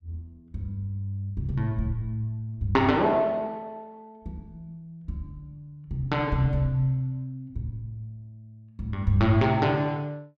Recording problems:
none

